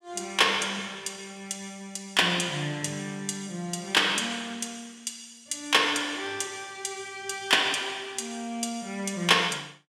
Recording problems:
none

